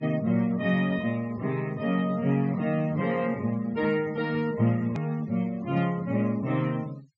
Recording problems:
low-pass filter; nothing above 8 kHz
noise reduction artefacts; signal-to-artefact ratio 24 dB
click at an edit; at 5 s

